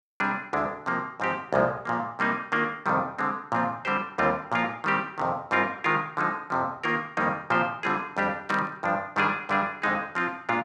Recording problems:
static burst; at 8.5 s; peak -5 dB vs average level

